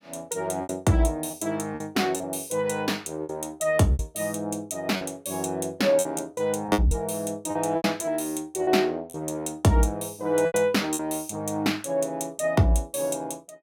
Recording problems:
packet loss; 7% of the sound replaced, filled with repeated pitch periods

